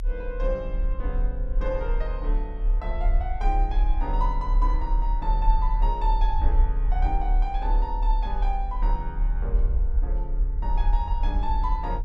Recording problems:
rumble; below 40 Hz, strongest tone 36 Hz, SNR -6 dB

